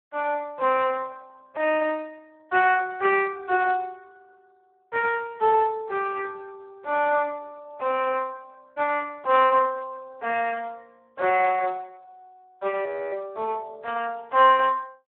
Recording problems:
telephone audio; 320 Hz to 3 kHz, Speex
audio freezing; at 13 s

